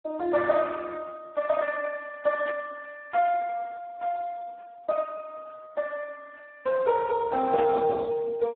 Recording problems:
telephone audio; 280 Hz to 2.3 kHz, Speex
burst of static; at 2.5 s and at 7.5 s; peak -5 dB vs average level

